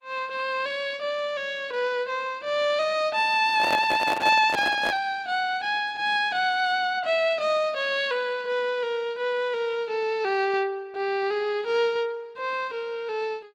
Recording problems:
codec artefacts; Opus, log-spectral distance 2 dB
microphone handling noise; from 3.5 to 5 s; peak 0 dB vs average level

